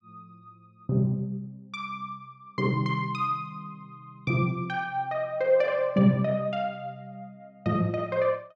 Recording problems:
none

